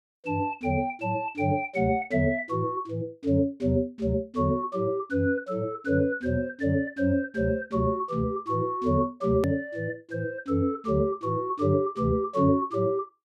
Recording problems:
click at an edit; at 9.5 s

